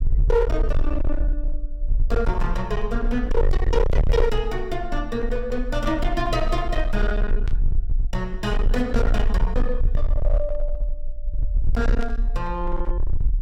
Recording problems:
distorted audio; hard clipping, uneven, signal-to-distortion ratio 6 dB
rumble; below 46 Hz, strongest tone 22 Hz, SNR 0 dB
burst of static; at 7.5 s and at 12 s; peak -10 dB vs average level

